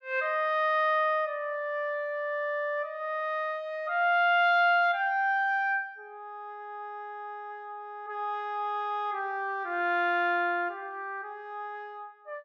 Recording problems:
none

